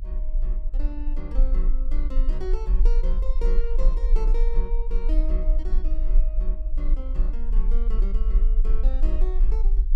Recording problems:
rumble; below 38 Hz, strongest tone 26 Hz, SNR -13 dB

